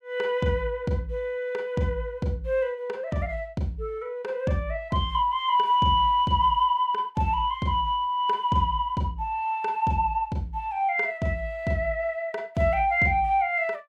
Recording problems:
none

